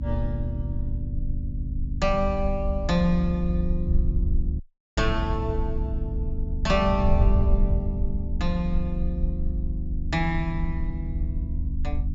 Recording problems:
treble cut off; nothing above 8 kHz
electrical hum; 50 Hz, harmonics up to 300 Hz, SNR 6 dB
low-frequency rumble; below 70 Hz, strongest tone 24 Hz, SNR 3 dB
wind noise; below 80 Hz, SNR 3 dB
dropout; at 4.5 s

